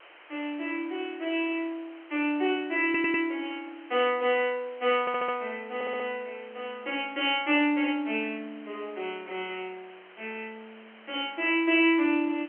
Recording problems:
telephone audio; 260 Hz to 3.2 kHz, G.711
hiss; SNR 23 dB
audio stuttering; at 3 s, at 5 s and at 6 s

